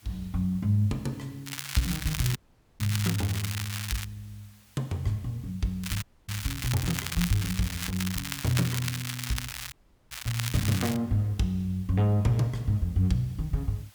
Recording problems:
hiss; slope +1 dB per octave, SNR 27 dB
crackling; from 1.5 to 4 s and from 6 to 11 s; loose cable, SNR 5 dB
audio cutting out; at 2.5 s, at 6 s and at 9.5 s

